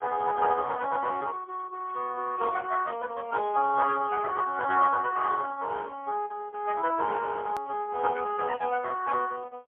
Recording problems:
phone line; 300 Hz to 3.3 kHz, AMR-NB, then MP3
hard cut with a click; at 7.5 s

